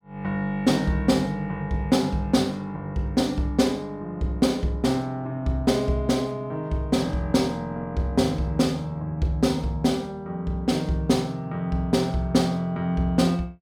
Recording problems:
none

